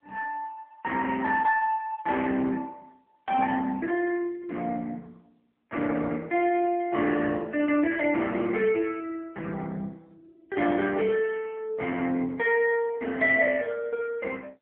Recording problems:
telephone audio; 300 Hz to 3.3 kHz, AMR-NB

